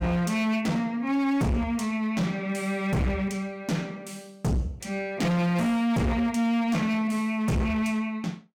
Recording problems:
distortion; hard clipping, signal-to-distortion ratio 6 dB

